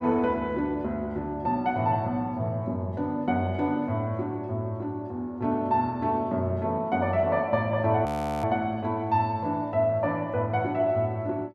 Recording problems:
audio freezing; at 8 s

